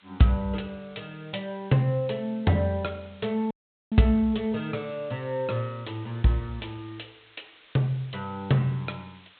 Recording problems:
treble cut off; nothing above 4 kHz
background hiss; SNR 27 dB
dropout; at 3.5 s

